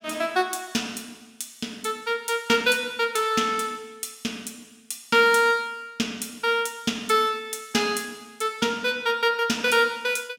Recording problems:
none

